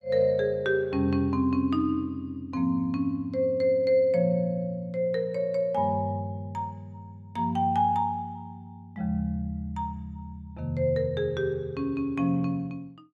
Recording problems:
none

